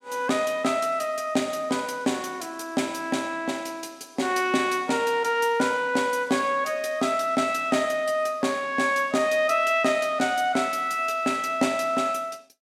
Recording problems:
none

